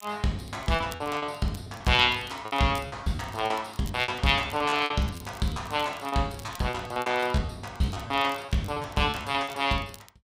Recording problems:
crackle; vinyl, SNR 23 dB
packet loss; 14% of the sound replaced, filled with repeated pitch periods

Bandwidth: 15.5 kHz